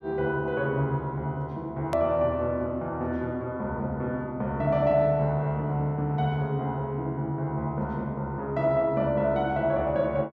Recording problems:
click at an edit; at 2 s

